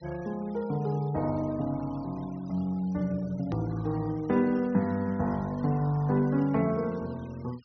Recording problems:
low-pass filter; nothing above 6.1 kHz
noise reduction artefacts; signal-to-artefact ratio 25 dB
hard cut with a click; at 3.5 s

